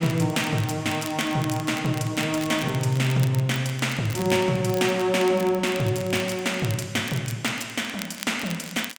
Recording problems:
crackling; vinyl, SNR 15 dB

